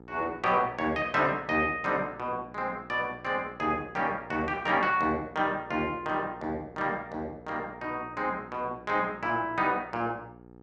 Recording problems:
hum; 60 Hz, harmonics up to 1.4 kHz, SNR 20 dB

